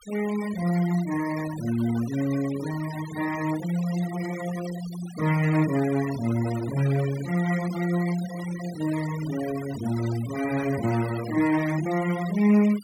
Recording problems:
noise reduction artefacts; signal-to-artefact ratio 15 dB

